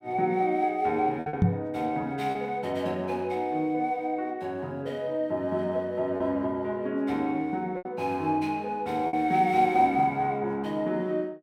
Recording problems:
packet loss; 3% of the sound replaced, filled with repeated pitch periods
microphone bump; at 1.5 s; peak +8 dB vs average level

